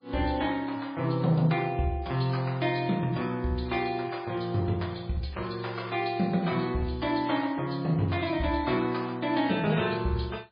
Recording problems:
codec artefacts; MP3, log-spectral distance 4 dB, nothing above 4.4 kHz

